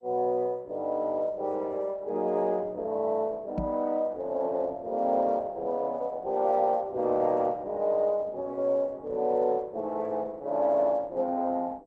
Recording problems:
codec artefacts; Opus, then MP2, log-spectral distance 2 dB
microphone bump; at 3.5 s; peak 0 dB vs average level

